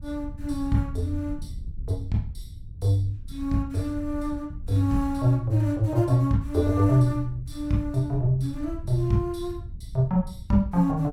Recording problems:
wind noise; below 88 Hz, SNR 13 dB

